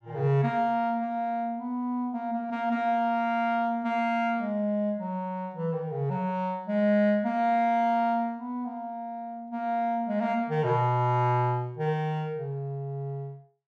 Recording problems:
none

